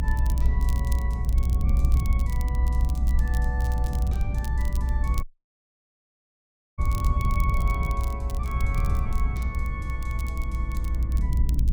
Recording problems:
low-frequency rumble; below 62 Hz, strongest tone 60 Hz, SNR -10 dB
wind noise; below 86 Hz, SNR -6 dB
crackling; vinyl, SNR 10 dB
dropout; at 5 s for 1.5 s

